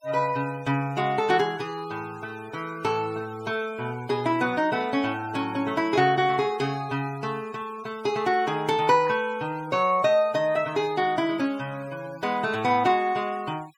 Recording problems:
denoising artefacts; signal-to-artefact ratio 23 dB

